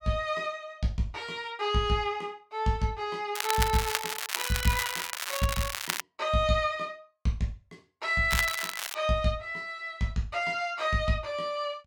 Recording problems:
crackling; from 3.5 to 6 s and at 8.5 s; loose cable, SNR 2 dB

